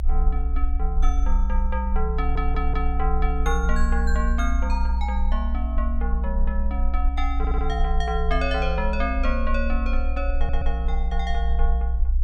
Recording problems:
rumble; below 60 Hz, SNR -4 dB
stutter; at 2 s, at 7.5 s and at 10 s

